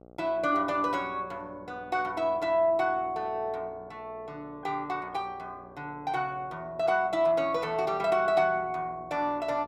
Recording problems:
hum; 60 Hz, harmonics up to 1.4 kHz, SNR 24 dB

